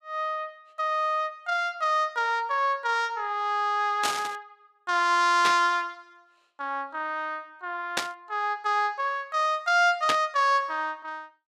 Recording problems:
static burst; 4 times, first at 4 s; peak +4 dB vs average level

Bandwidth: 14.5 kHz